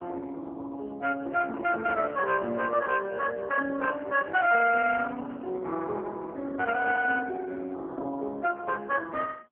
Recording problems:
phone line; 220 Hz to 2.2 kHz, AMR-NB

